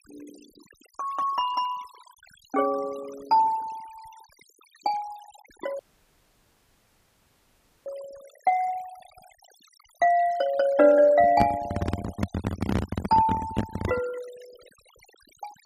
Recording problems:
noise reduction artefacts; signal-to-artefact ratio 23 dB
audio cutting out; at 6 s for 2 s
handling noise; from 11 to 14 s; peak +2 dB vs average level

